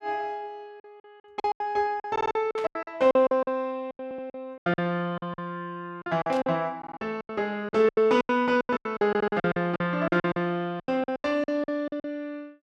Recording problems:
packet loss; 18% of the sound replaced, filled with silence
stutter; 4 times, first at 2 s
burst of static; at 2.5 s and at 6.5 s; peak -9 dB vs average level

